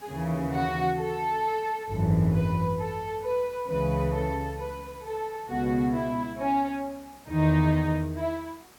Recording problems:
hiss; slope -3 dB per octave, SNR 24 dB

